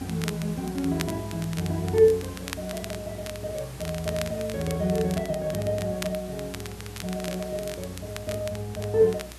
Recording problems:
hum; 60 Hz, harmonics up to 660 Hz, SNR 18 dB
background hiss; slope -3 dB per octave, SNR 17 dB
crackling; vinyl, SNR 13 dB

